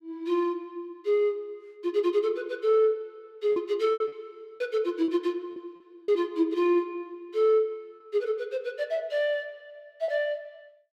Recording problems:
packet loss; 4% of the sound replaced, filled with repeated pitch periods

